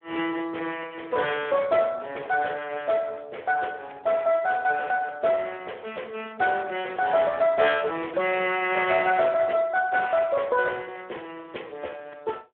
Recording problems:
phone line; 340 Hz to 3.5 kHz, Speex

